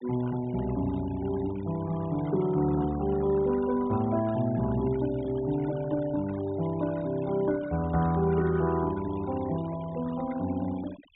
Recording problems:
low-pass filter; nothing above 4 kHz
noise reduction artefacts; signal-to-artefact ratio 19 dB

